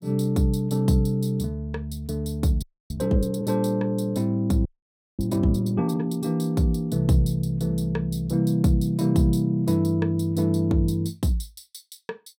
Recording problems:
frozen audio; at 2.5 s and at 4.5 s for 0.5 s

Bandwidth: 16 kHz